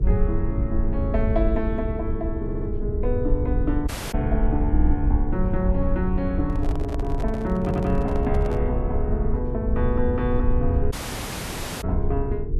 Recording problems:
electrical hum; 50 Hz, harmonics up to 450 Hz, SNR 12 dB
low-frequency rumble; below 76 Hz, SNR -1 dB
audio stuttering; at 2.5 s, at 4.5 s and at 7.5 s
audio cutting out; at 4 s and at 11 s for 1 s
microphone handling noise; from 6.5 to 8.5 s; peak -4 dB vs average level

